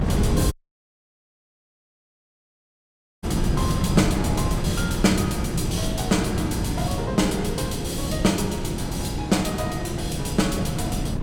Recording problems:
wind noise; below 220 Hz, SNR 2 dB
audio cutting out; at 0.5 s for 2.5 s

